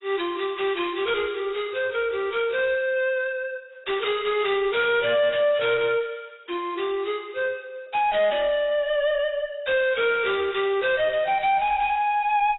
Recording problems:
codec artefacts; AAC, log-spectral distance 4 dB, nothing above 3.8 kHz
distortion; soft clipping, signal-to-distortion ratio 10 dB

